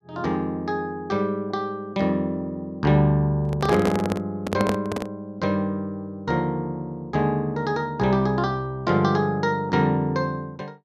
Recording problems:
microphone handling noise; from 3.5 to 5 s; peak +3 dB vs average level

